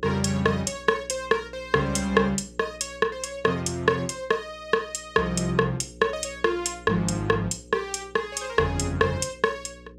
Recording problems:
hum; 60 Hz, harmonics up to 540 Hz, SNR 23 dB

